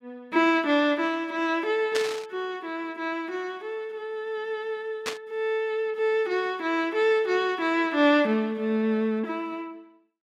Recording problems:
burst of static; at 2 s and at 5 s; peak 0 dB vs average level

